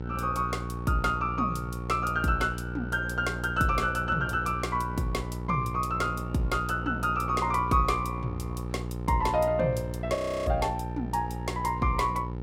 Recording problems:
hum; 60 Hz, harmonics up to 960 Hz, SNR 7 dB
audio freezing; at 10 s

